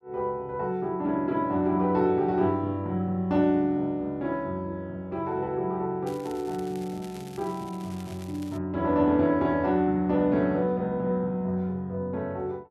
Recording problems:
crackle; from 6 to 8.5 s; loose cable, SNR 23 dB

